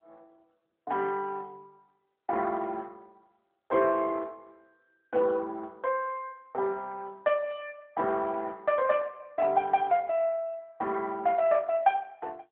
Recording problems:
telephone audio; 340 Hz to 3.2 kHz, AMR-NB

